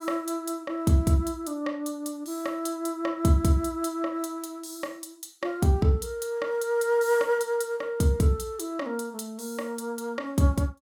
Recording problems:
none

